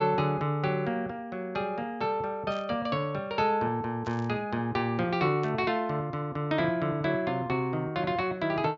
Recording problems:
treble cut off; nothing above 7.5 kHz
static burst; at 2.5 s, at 4 s and at 5.5 s; peak -13 dB vs average level

